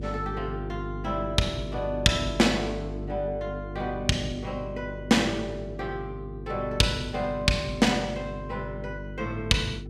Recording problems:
electrical hum; 50 Hz, harmonics up to 450 Hz, SNR 10 dB

